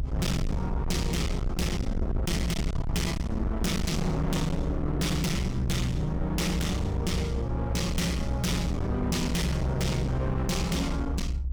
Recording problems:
distortion; hard clipping, signal-to-distortion ratio 6 dB
low-frequency rumble; below 130 Hz, SNR 3 dB

